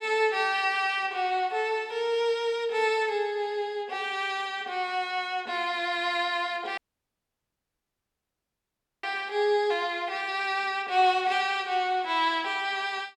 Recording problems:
dropout; at 7 s for 2 s

